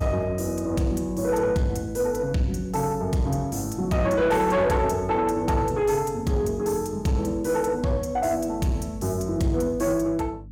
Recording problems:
distorted audio; soft clipping, signal-to-distortion ratio 12 dB
hum; 50 Hz, harmonics up to 300 Hz, SNR 18 dB

